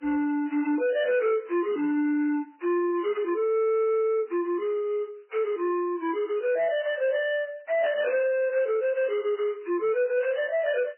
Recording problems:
codec artefacts; MP3, log-spectral distance 2 dB, nothing above 2.7 kHz
distortion; soft clipping, signal-to-distortion ratio 11 dB

